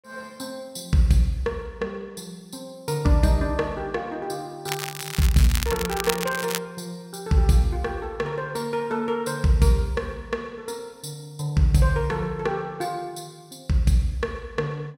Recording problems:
crackling; from 4.5 to 6.5 s; loose cable, SNR 6 dB

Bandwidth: 16 kHz